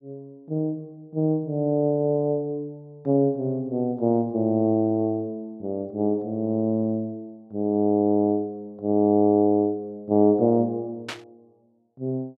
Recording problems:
static burst; at 11 s; peak -4 dB vs average level

